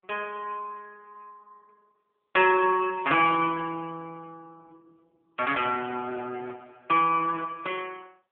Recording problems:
phone line; 300 Hz to 3.3 kHz, AMR-NB

